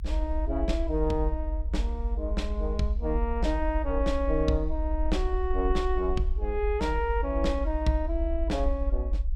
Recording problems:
low-frequency rumble; below 62 Hz, strongest tone 46 Hz, SNR 1 dB

